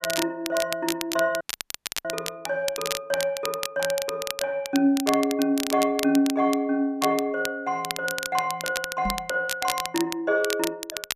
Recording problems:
crackle; vinyl, SNR 7 dB
audio cutting out; at 1.5 s for 0.5 s
microphone bump; at 9 s; peak -2 dB vs average level

